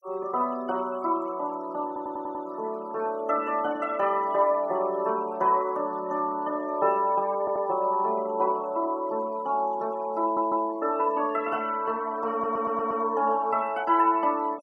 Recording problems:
denoising artefacts; signal-to-artefact ratio 24 dB
stutter; 4 times, first at 2 s

